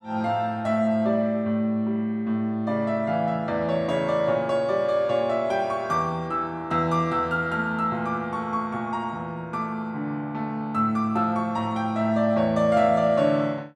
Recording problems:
none

